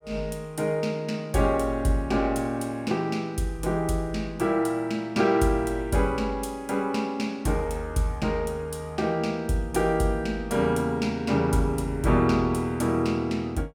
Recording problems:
none

